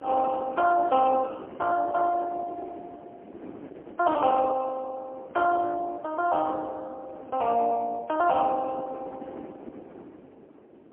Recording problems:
telephone audio; 320 Hz to 3.1 kHz, AMR-NB, then MP3
wind noise; below 520 Hz, SNR 18 dB

